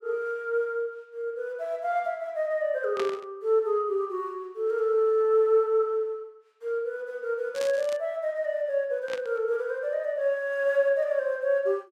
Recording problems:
burst of static; at 3 s, at 7.5 s and at 9 s; peak -4 dB vs average level

